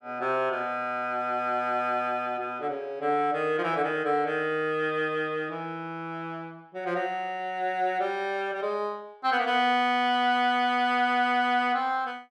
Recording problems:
none

